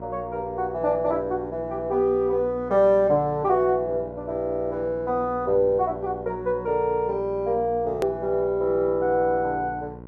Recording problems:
hum; 60 Hz, harmonics up to 1.1 kHz, SNR 16 dB
hard cut with a click; at 8 s

